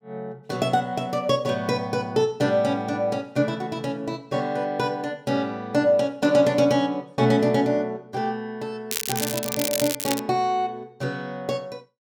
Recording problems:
crackle; from 9 to 10 s; loose cable, SNR 3 dB

